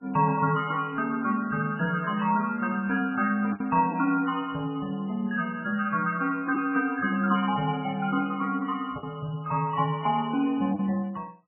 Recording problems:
lossy compression; MP3, log-spectral distance 4 dB, nothing above 2.4 kHz
lost packets; 1.5% of the sound replaced, filled with the last packet
burst of static; at 7.5 s; peak -16 dB vs average level

